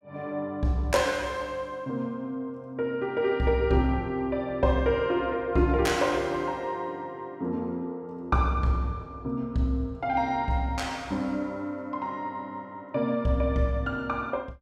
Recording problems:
none

